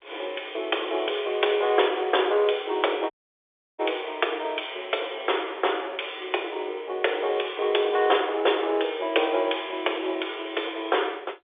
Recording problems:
telephone audio; 320 Hz to 3.6 kHz, G.711
audio cutting out; at 3 s for 0.5 s

